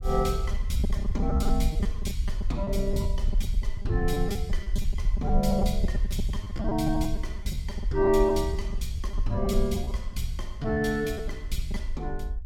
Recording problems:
low-frequency rumble; below 58 Hz, SNR 2 dB
lost packets; 12% of the sound replaced, filled with repeated pitch periods

